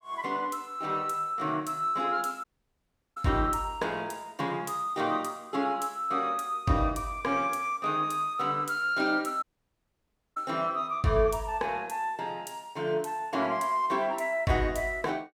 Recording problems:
audio cutting out; at 2.5 s for 0.5 s and at 9.5 s for 1 s

